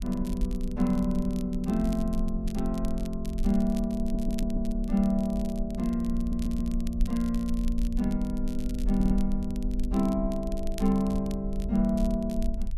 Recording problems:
rumble; below 46 Hz, SNR 7 dB
crackle; vinyl, SNR 21 dB
audio stuttering; at 4 s, at 6 s and at 9 s

